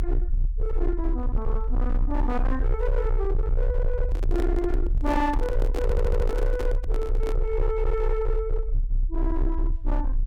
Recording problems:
distortion; hard clipping, signal-to-distortion ratio 10 dB
low-frequency rumble; below 44 Hz, strongest tone 34 Hz, SNR -2 dB
microphone handling noise; from 4 to 7.5 s; peak +1 dB vs average level
stutter; at 6 s

